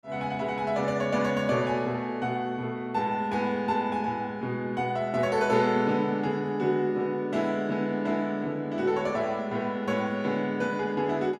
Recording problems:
none

